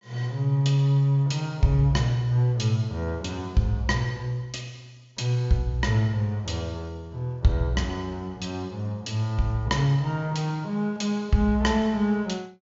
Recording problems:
treble missing; nothing above 7.3 kHz

